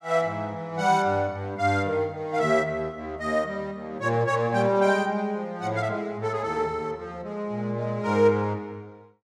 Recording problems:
none

